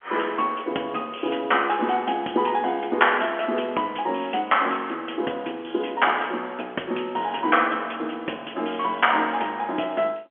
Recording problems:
phone line; 240 Hz to 3.3 kHz, G.711

